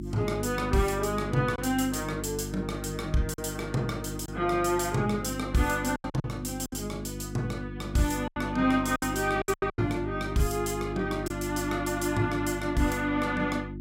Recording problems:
hum; 50 Hz, harmonics up to 350 Hz, SNR 8 dB
packet loss; 5% of the sound replaced, filled with silence

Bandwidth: 16 kHz